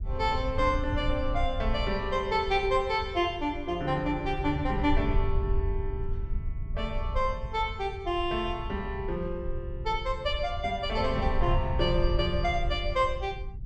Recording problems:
low-frequency rumble; below 76 Hz, SNR 5 dB

